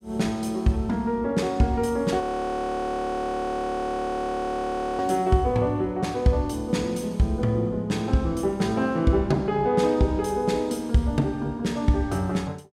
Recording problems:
frozen audio; at 2 s for 3 s

